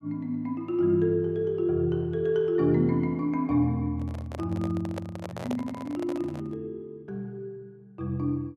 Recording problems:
microphone handling noise; from 4 to 6.5 s; peak -3 dB vs average level

